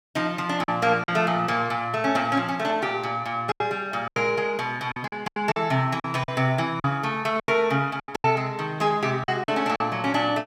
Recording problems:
lost packets; 9% of the sound replaced, filled with silence

